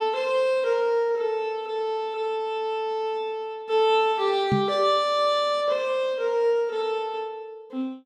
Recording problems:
knock on the microphone; at 4.5 s; peak +4 dB vs average level

